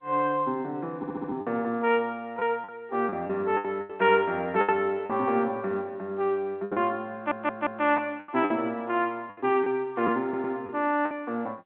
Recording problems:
telephone audio; 240 Hz to 3.5 kHz, G.711
packet loss; 8% of the sound replaced, filled with the last packet
audio stuttering; at 1 s, at 7 s and at 10 s

